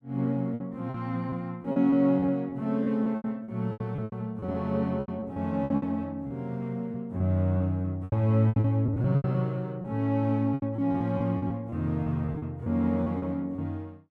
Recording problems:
lost packets; 13% of the sound replaced, filled with repeated pitch periods

